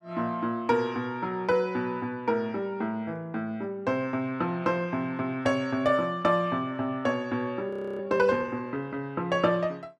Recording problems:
audio freezing; at 7.5 s

